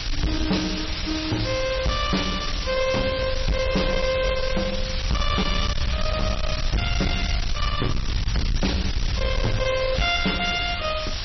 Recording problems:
lossy codec; MP3, log-spectral distance 15 dB, nothing above 5.8 kHz
distortion; hard clipping, uneven, signal-to-distortion ratio 6 dB
background hiss; slope +1 dB per octave, SNR 5 dB
rumble; below 88 Hz, SNR 4 dB

